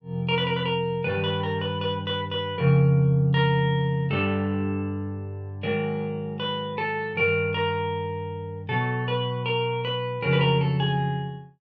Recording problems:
none

